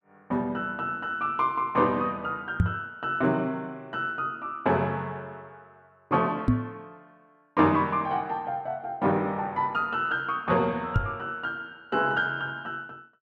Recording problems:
microphone bump; at 2.5 s, at 6.5 s and at 11 s; peak +9 dB vs average level

